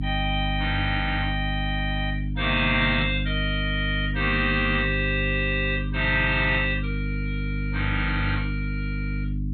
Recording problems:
lossy compression; MP2, log-spectral distance 3 dB, nothing above 3.5 kHz
hum; 50 Hz, harmonics up to 300 Hz, SNR 4 dB
burst of static; at 3 s and at 6.5 s; peak -9 dB vs average level

